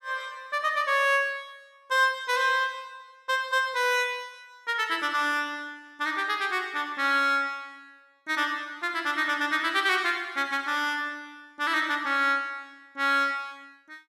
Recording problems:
none

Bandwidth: 14.5 kHz